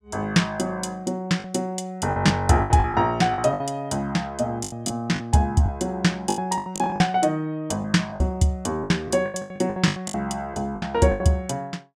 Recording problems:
lost packets; 13% of the sound replaced, filled with the last packet

